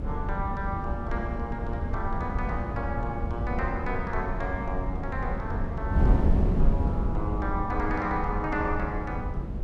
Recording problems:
wind on the microphone; below 150 Hz, SNR -2 dB

